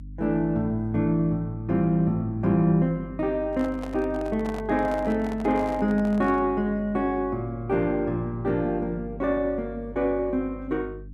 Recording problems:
hum; 50 Hz, harmonics up to 300 Hz, SNR 16 dB
microphone handling noise; from 3.5 to 6.5 s; peak -9 dB vs average level

